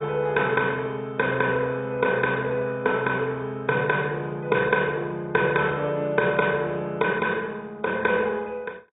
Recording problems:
low-pass filter; nothing above 3.7 kHz
codec artefacts; MP2, log-spectral distance 2 dB

